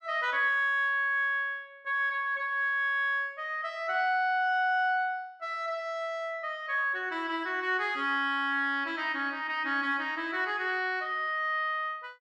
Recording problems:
none

